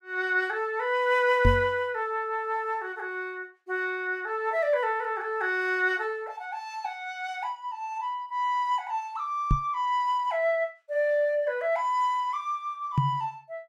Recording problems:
microphone bump; at 1.5 s, at 9.5 s and at 13 s; peak +8 dB vs average level

